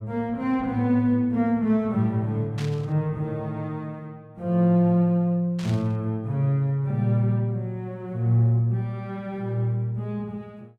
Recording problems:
static burst; at 2.5 s and at 5.5 s; peak -10 dB vs average level

